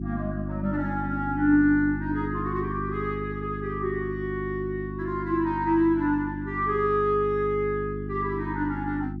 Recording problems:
hum; 50 Hz, harmonics up to 350 Hz, SNR 7 dB

